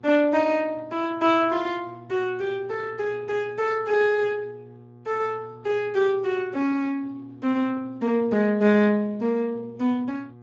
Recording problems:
codec artefacts; Speex, log-spectral distance 2 dB
electrical hum; 60 Hz, harmonics up to 1.2 kHz, SNR 22 dB

